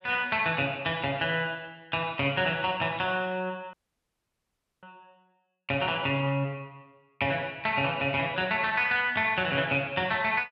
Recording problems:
audio cutting out; at 3.5 s for 1 s

